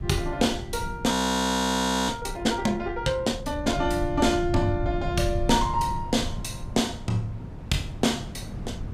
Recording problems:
low-frequency rumble; below 130 Hz, SNR 10 dB
wind noise; below 270 Hz, SNR 17 dB
frozen audio; at 1 s for 1 s

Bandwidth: 15.5 kHz